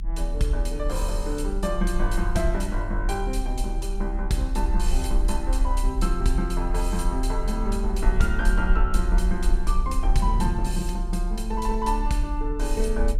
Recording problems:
rumble; below 38 Hz, strongest tone 36 Hz, SNR -1 dB
wind noise; below 160 Hz, SNR 12 dB

